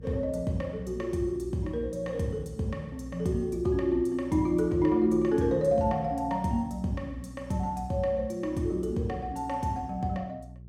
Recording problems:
hum; 60 Hz, harmonics up to 420 Hz, SNR 17 dB

